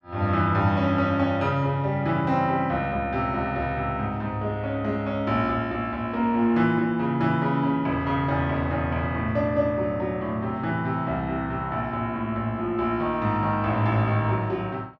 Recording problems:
none

